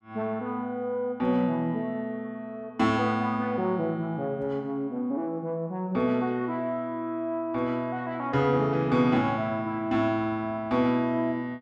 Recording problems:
none

